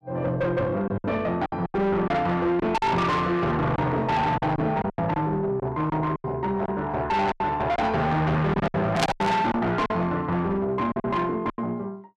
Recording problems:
distorted audio; soft clipping, signal-to-distortion ratio 6 dB
lost packets; 10% of the sound replaced, filled with silence
burst of static; at 9 s; peak +4 dB vs average level

